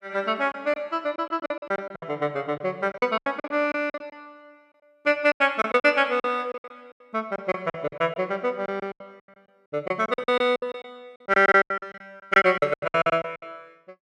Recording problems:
packet loss; 17% of the sound replaced, filled with silence

